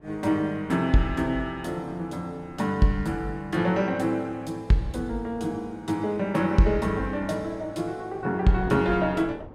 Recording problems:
wind noise; below 520 Hz, SNR 22 dB

